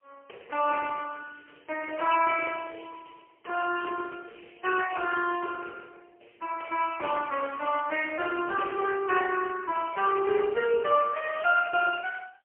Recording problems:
telephone audio; 320 Hz to 2.8 kHz, AMR-NB, then MP3

